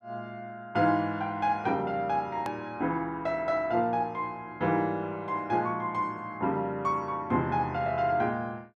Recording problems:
hard cut with a click; at 2.5 s

